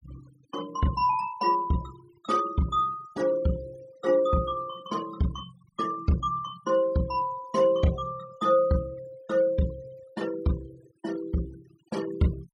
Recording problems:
noise reduction artefacts; signal-to-artefact ratio 20 dB

